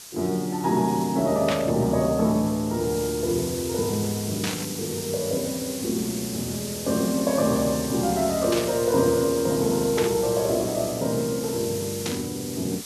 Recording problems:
hiss; SNR 9 dB
burst of static; 5 times, first at 1.5 s; peak 0 dB vs average level

